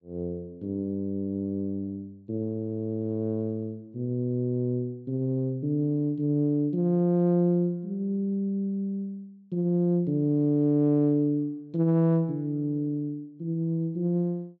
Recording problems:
low-pass filter; nothing above 7.4 kHz

